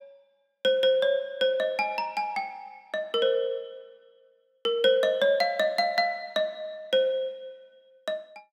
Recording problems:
none

